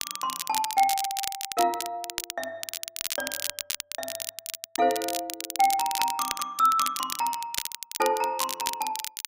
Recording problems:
crackle; vinyl, SNR 4 dB

